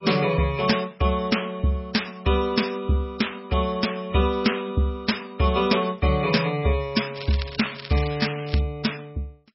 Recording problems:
lossy compression; MP3, log-spectral distance 6 dB, nothing above 5.5 kHz
crackling; from 7 to 8.5 s; loose cable, SNR 13 dB

